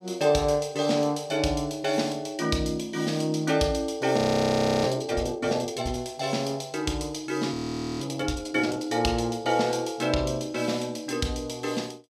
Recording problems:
audio freezing; at 4 s for 0.5 s and at 7.5 s

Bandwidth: 14.5 kHz